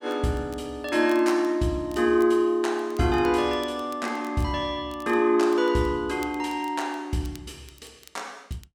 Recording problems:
crackle; vinyl, SNR 27 dB

